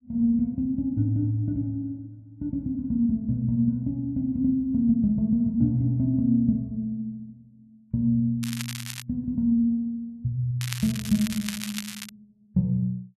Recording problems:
crackling; at 8.5 s and from 11 to 12 s; loose cable, SNR 10 dB

